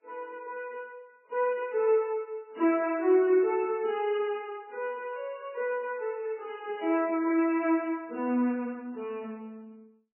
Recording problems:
lossy codec; MP3, log-spectral distance 2 dB, nothing above 2.4 kHz

